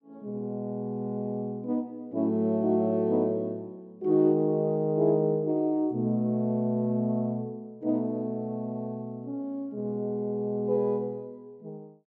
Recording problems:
none

